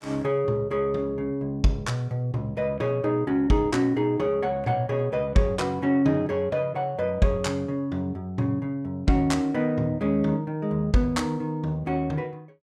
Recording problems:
none

